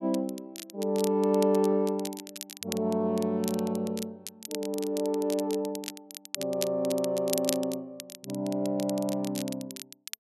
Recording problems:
crackle; vinyl, SNR 11 dB

